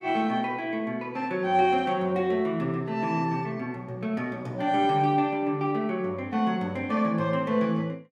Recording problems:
none

